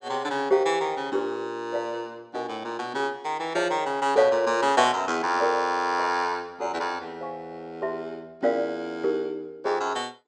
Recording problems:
none

